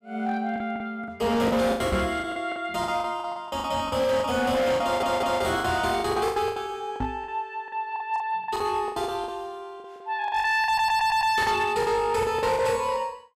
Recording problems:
distortion; hard clipping, signal-to-distortion ratio 10 dB
packet loss; 16% of the sound replaced, filled with the last packet
microphone thump; at 2 s and at 7 s; peak +2 dB vs average level
stutter; at 5 s and at 11 s

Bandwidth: 15 kHz